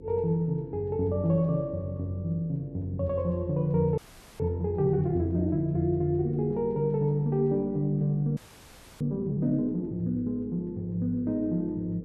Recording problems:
hum; 50 Hz, harmonics up to 500 Hz, SNR 19 dB
frozen audio; at 4 s and at 8.5 s for 0.5 s

